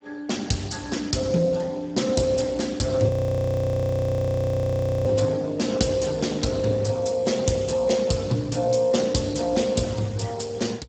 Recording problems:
lossy codec; Speex, log-spectral distance 6 dB
audio freezing; at 3 s for 2 s

